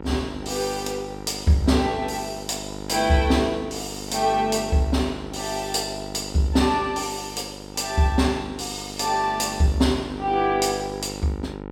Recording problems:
hum; 50 Hz, harmonics up to 2 kHz, SNR 12 dB

